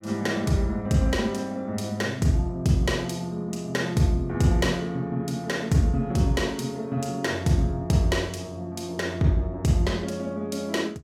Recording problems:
none

